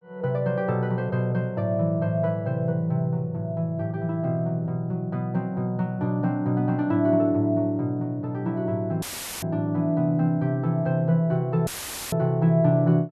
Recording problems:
audio cutting out; at 9 s and at 12 s; filled with static

